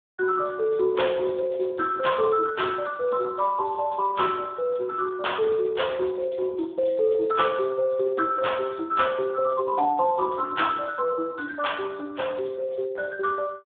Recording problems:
phone line; 150 Hz to 3.6 kHz, Speex

